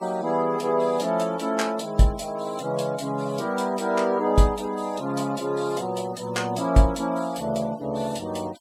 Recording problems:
denoising artefacts; signal-to-artefact ratio 22 dB

